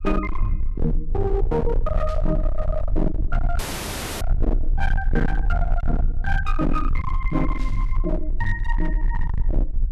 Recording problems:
distortion; hard clipping, signal-to-distortion ratio 6 dB
low-frequency rumble; below 42 Hz, strongest tone 24 Hz, SNR 0 dB
static burst; at 2 s and at 7.5 s; peak -12 dB vs average level
audio cutting out; at 3.5 s for 0.5 s

